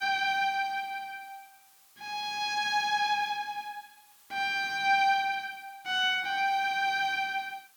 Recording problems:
hiss; SNR 28 dB

